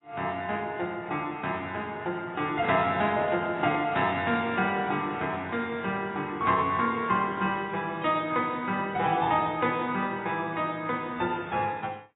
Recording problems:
lossy compression; AAC, log-spectral distance 2 dB, nothing above 3.8 kHz
handling noise; from 2.5 to 5.5 s; peak -6 dB vs average level

